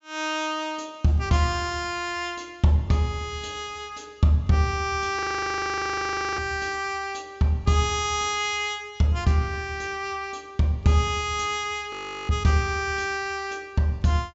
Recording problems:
low-pass filter; nothing above 8 kHz
audio freezing; at 5 s for 1 s and at 12 s

